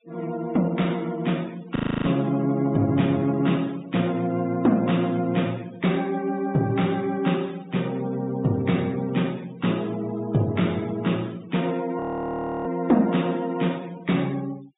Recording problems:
treble missing; nothing above 4 kHz
noise reduction artefacts; signal-to-artefact ratio 23 dB
frozen audio; at 2 s and at 12 s for 0.5 s

